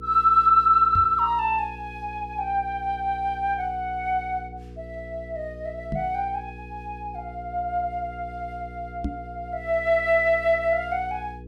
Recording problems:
electrical hum; 60 Hz, harmonics up to 480 Hz, SNR 18 dB
microphone bump; at 1 s, at 6 s and at 9 s; peak -2 dB vs average level

